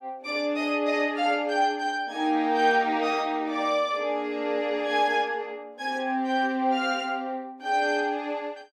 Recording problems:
none

